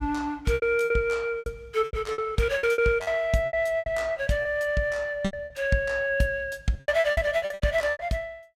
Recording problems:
lost packets; 17% of the sound replaced, filled with repeated pitch periods

